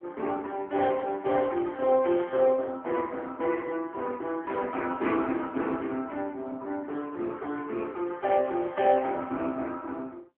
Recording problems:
telephone audio; 240 Hz to 3.4 kHz, AMR-NB

